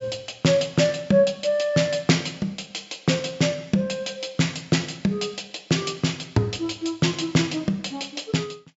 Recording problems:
treble missing; nothing above 8 kHz

